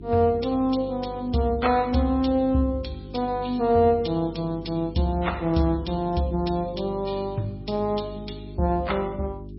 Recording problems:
lossy codec; MP3, log-spectral distance 3 dB, nothing above 5.5 kHz
mains hum; 50 Hz, harmonics up to 400 Hz, SNR 15 dB

